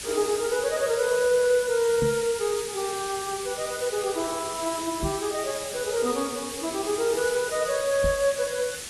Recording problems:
codec artefacts; AAC, log-spectral distance 12 dB
hiss; SNR 7 dB
microphone thump; at 2 s, at 5 s and at 8 s; peak 0 dB vs average level

